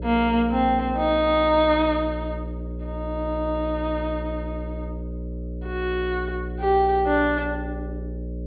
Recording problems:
treble missing; nothing above 4.5 kHz
electrical hum; 60 Hz, harmonics up to 600 Hz, SNR 9 dB

